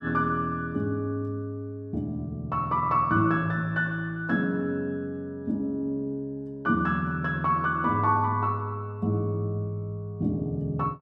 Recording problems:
none

